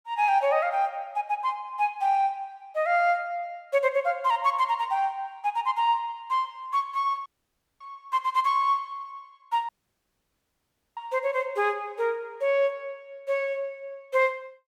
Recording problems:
dropout; at 7.5 s for 0.5 s and at 9.5 s for 1.5 s

